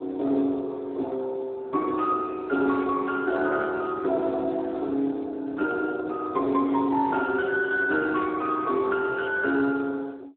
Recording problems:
phone line; 240 Hz to 2.8 kHz, Speex

